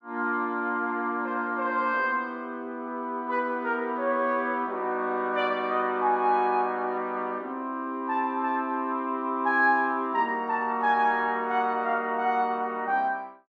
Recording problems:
none

